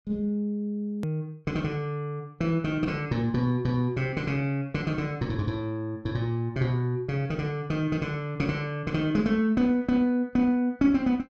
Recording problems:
hard cut with a click; at 1 s

